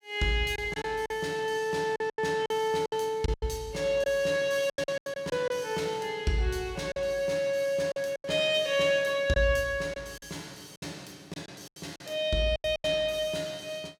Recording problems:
lost packets; 10% of the sound replaced, filled with silence

